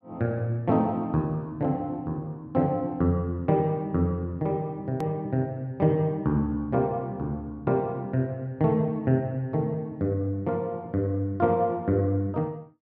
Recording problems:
hard cut with a click; at 5 s

